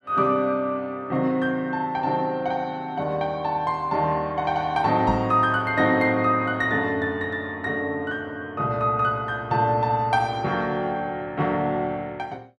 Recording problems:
microphone bump; at 5 s; peak -1 dB vs average level

